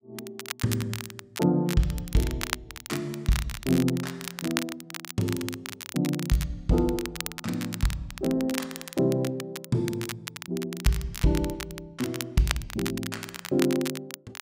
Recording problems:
crackling; vinyl, SNR 8 dB

